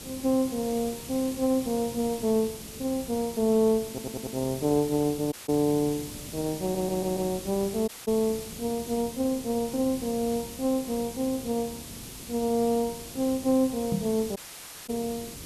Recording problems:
background hiss; SNR 11 dB
stutter; at 4 s and at 6.5 s
audio cutting out; at 5.5 s, at 8 s and at 14 s for 0.5 s
knock on the microphone; at 14 s; peak +3 dB vs average level

